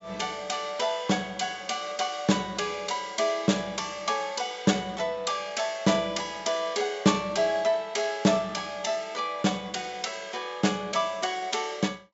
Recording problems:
treble missing; nothing above 8 kHz

